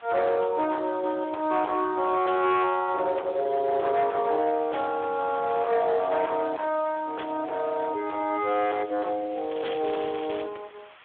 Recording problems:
telephone audio; 280 Hz to 3.4 kHz, Speex
distortion; hard clipping, signal-to-distortion ratio 11 dB
hiss; SNR 24 dB
crackle; at 9.5 s; loose cable, SNR 16 dB

